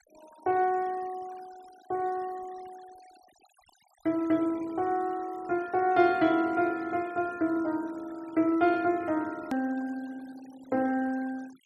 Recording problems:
denoising artefacts; signal-to-artefact ratio 24 dB
hard cut with a click; at 9.5 s

